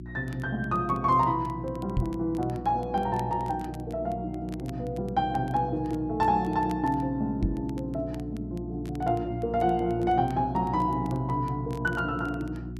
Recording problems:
hum; 60 Hz, harmonics up to 360 Hz, SNR 10 dB
crackle; vinyl, SNR 27 dB
microphone thump; at 2 s and at 7.5 s; peak +4 dB vs average level

